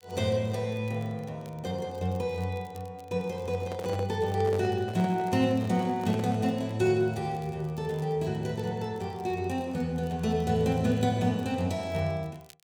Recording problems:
crackling; vinyl, SNR 29 dB
handling noise; from 3.5 to 6.5 s; peak -5 dB vs average level

